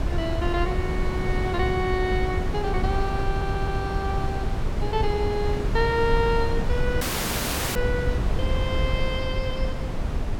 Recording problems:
wind on the microphone; below 140 Hz, SNR 0 dB
stutter; at 3.5 s
audio cutting out; at 7 s for 1 s

